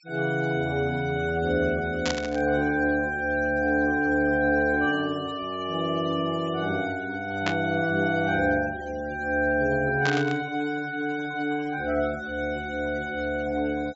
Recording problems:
low-pass filter; nothing above 8 kHz
noise reduction artefacts; signal-to-artefact ratio 22 dB
static burst; at 2 s, at 7.5 s and at 10 s; peak +1 dB vs average level

